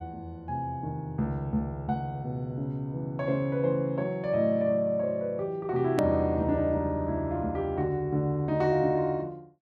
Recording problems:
edit click; at 6 s

